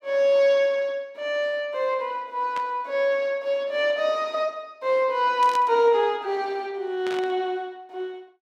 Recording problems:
burst of static; at 2.5 s, at 5.5 s and at 7 s; peak -8 dB vs average level

